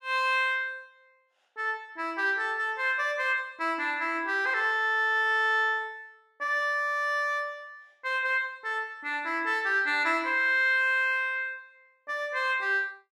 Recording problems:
none

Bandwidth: 14.5 kHz